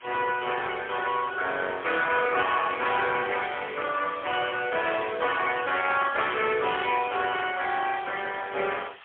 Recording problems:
telephone audio; 320 Hz to 3.4 kHz, AMR-NB, then MP3
background hiss; SNR 20 dB

